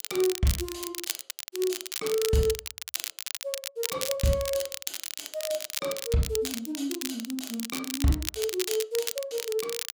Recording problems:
crackling; vinyl, SNR 4 dB

